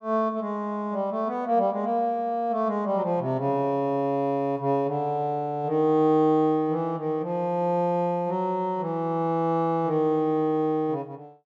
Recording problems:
none

